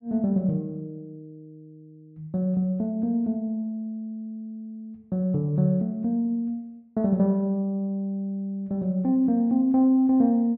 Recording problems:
none

